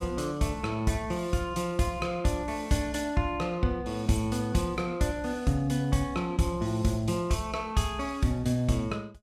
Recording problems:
none

